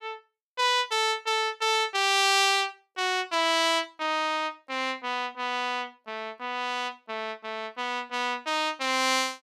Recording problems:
none

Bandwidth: 15 kHz